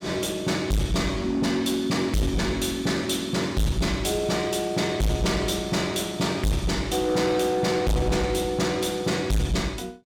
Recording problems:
distorted audio; hard clipping, uneven, signal-to-distortion ratio 6 dB

